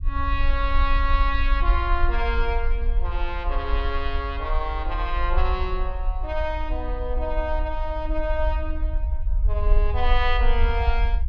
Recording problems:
rumble; below 50 Hz, SNR -1 dB

